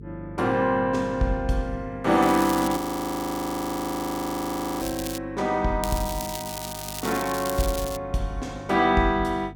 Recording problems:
hum; 50 Hz, harmonics up to 450 Hz, SNR 16 dB
crackling; from 2 to 5 s and from 6 to 8 s; loose cable, SNR 10 dB
audio freezing; at 3 s for 2 s

